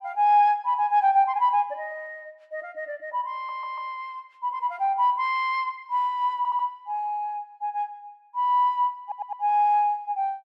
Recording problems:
stutter; at 3.5 s, at 6.5 s and at 9 s

